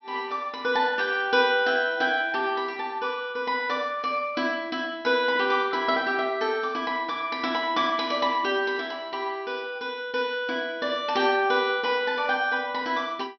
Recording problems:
treble missing; nothing above 5.8 kHz

